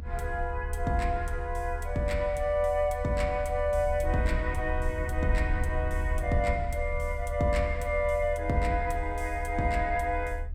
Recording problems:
low-frequency rumble; below 74 Hz, strongest tone 30 Hz, SNR 5 dB

